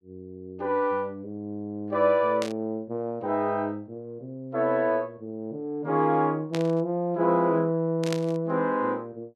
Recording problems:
static burst; at 2.5 s, at 6.5 s and at 8 s; peak -3 dB vs average level

